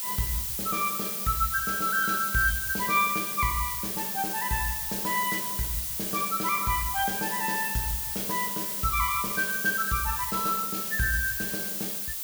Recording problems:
hiss; slope +3 dB per octave, SNR 0 dB

